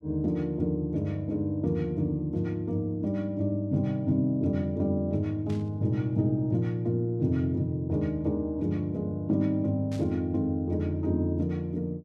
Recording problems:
burst of static; at 5.5 s and at 10 s; peak -15 dB vs average level

